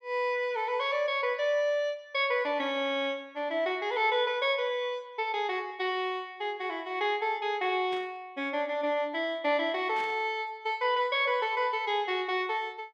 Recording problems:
static burst; at 8 s and at 10 s; peak -10 dB vs average level

